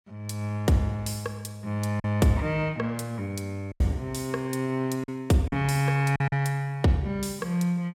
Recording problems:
packet loss; 4% of the sound replaced, filled with silence

